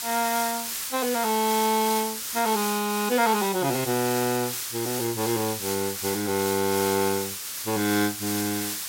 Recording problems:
background hiss; slope +3 dB per octave, SNR 4 dB

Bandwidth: 16.5 kHz